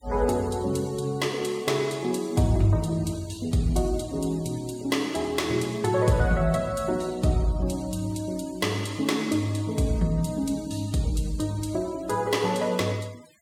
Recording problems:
denoising artefacts; signal-to-artefact ratio 22 dB

